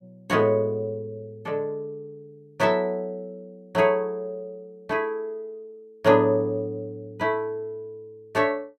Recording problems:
none

